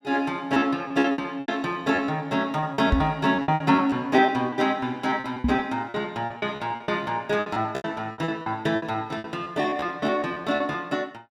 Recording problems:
lost packets; 17% of the sound replaced, filled with repeated pitch periods
knock on the microphone; at 3 s and at 5.5 s; peak +7 dB vs average level

